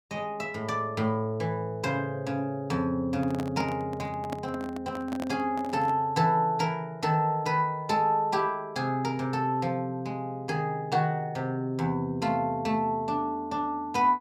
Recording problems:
handling noise; from 3 to 6 s; peak -3 dB vs average level

